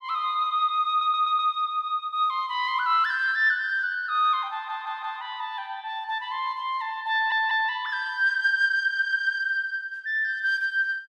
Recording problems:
stutter; 4 times, first at 1 s

